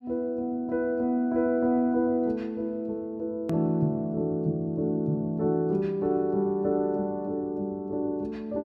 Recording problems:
hard cut with a click; at 3.5 s

